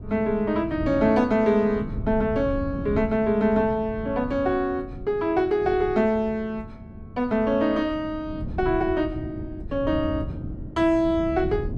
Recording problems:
wind noise; below 180 Hz, SNR 12 dB

